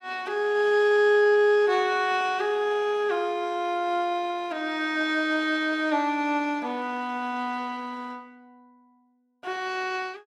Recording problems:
none

